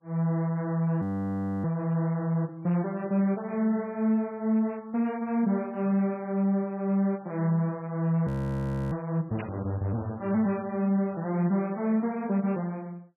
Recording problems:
codec artefacts; MP3, log-spectral distance 2 dB, nothing above 13.1 kHz
audio freezing; at 1 s for 0.5 s and at 8.5 s for 0.5 s
burst of static; at 9.5 s; peak -8 dB vs average level

